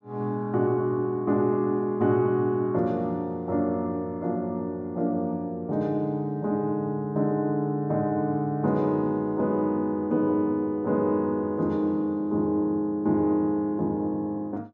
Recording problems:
none

